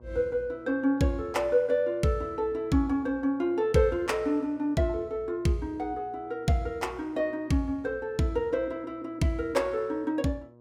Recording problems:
hum; 60 Hz, harmonics up to 1.1 kHz, SNR 26 dB

